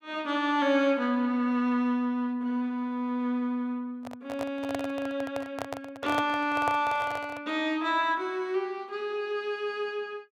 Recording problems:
microphone handling noise; from 4 to 7.5 s; peak +1 dB vs average level

